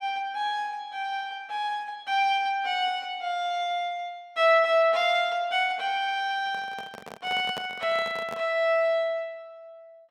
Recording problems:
microphone handling noise; from 6.5 to 8.5 s; peak -5 dB vs average level

